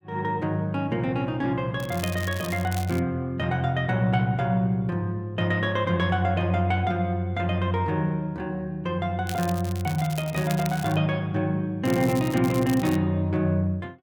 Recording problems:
crackle; from 2 to 3 s, from 9.5 to 11 s and from 12 to 13 s; loose cable, SNR 14 dB

